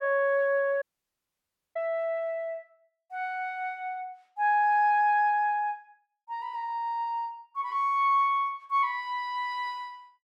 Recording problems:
dropout; at 1 s for 1 s

